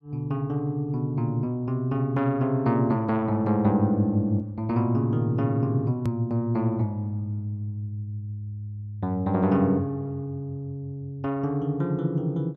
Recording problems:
edit click; at 6 s

